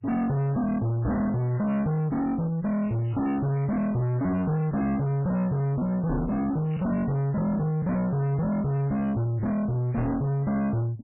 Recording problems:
codec artefacts; MP3, log-spectral distance 2 dB, nothing above 2.6 kHz
distortion; soft clipping, signal-to-distortion ratio 5 dB
crackle; at 1 s, from 3 to 4 s and at 6.5 s; loose cable, SNR 27 dB
microphone thump; at 1 s, at 6 s and at 10 s; peak +7 dB vs average level

